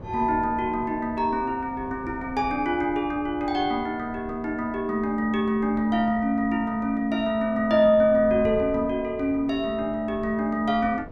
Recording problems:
wind on the microphone; below 360 Hz, SNR 18 dB

